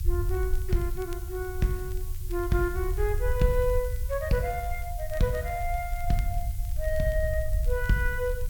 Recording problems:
background hiss; slope +2 dB per octave, SNR 15 dB
rumble; below 68 Hz, SNR 3 dB
crackling; vinyl, SNR 27 dB

